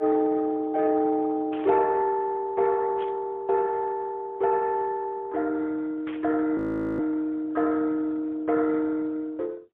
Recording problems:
telephone audio; 260 Hz to 2 kHz, AMR-NB, then MP3
burst of static; at 1.5 s, at 3 s and at 6 s; peak -12 dB vs average level
audio freezing; at 6.5 s

